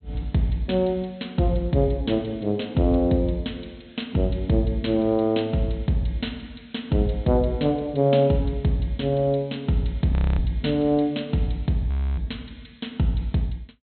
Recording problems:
treble missing; nothing above 4.2 kHz
frozen audio; at 10 s and at 12 s

